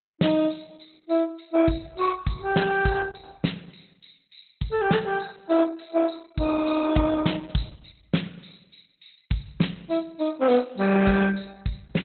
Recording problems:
lossy codec; Opus, log-spectral distance 8 dB, nothing above 4.1 kHz

